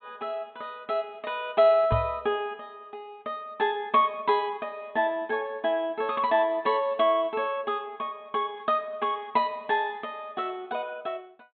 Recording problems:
low-pass filter; nothing above 4 kHz
microphone bump; at 2 s; peak +3 dB vs average level

